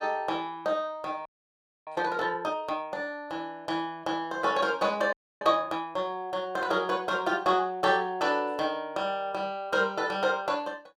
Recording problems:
frozen audio; at 1.5 s for 0.5 s and at 5 s

